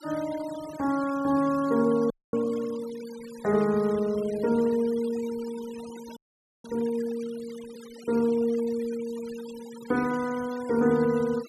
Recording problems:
noise reduction artefacts; signal-to-artefact ratio 20 dB
audio freezing; at 2 s and at 6 s

